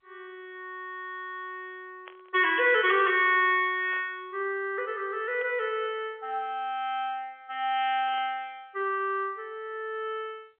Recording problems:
telephone audio; 340 Hz to 3.4 kHz, G.711
burst of static; 4 times, first at 2 s; peak -14 dB vs average level

